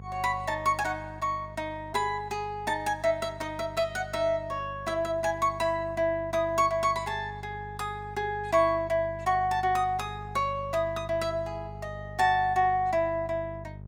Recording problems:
hum; 50 Hz, harmonics up to 650 Hz, SNR 15 dB

